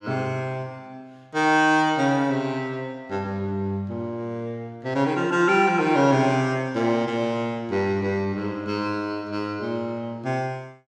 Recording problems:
none

